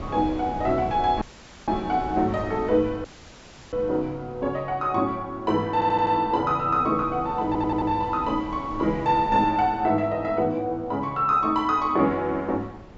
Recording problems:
treble cut off; nothing above 8 kHz
wind on the microphone; below 520 Hz, SNR 17 dB
audio cutting out; at 1 s and at 3 s for 0.5 s
audio stuttering; at 5.5 s and at 7.5 s

